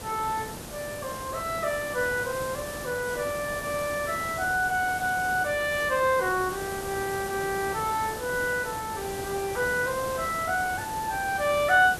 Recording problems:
background hiss; SNR 9 dB

